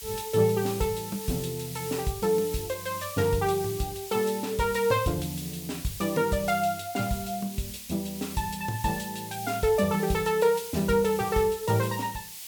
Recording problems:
background hiss; SNR 11 dB

